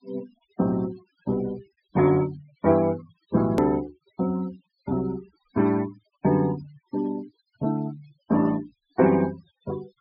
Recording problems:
treble cut off; nothing above 5.5 kHz
noise reduction artefacts; signal-to-artefact ratio 20 dB
click at an edit; at 3.5 s

